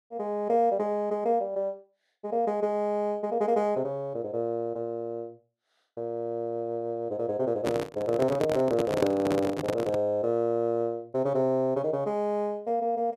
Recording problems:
handling noise; from 7.5 to 10 s; peak +3 dB vs average level

